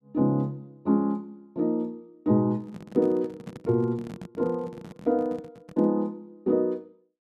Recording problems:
handling noise; from 2.5 to 6 s; peak -8 dB vs average level

